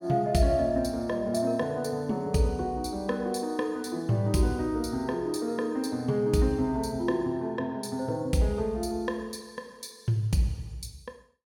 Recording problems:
none

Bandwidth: 17 kHz